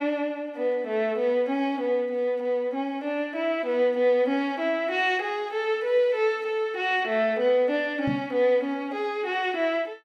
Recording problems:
microphone bump; at 8 s; peak -1 dB vs average level

